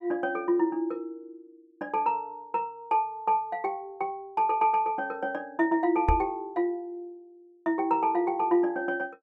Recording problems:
knock on the microphone; at 6 s; peak +4 dB vs average level

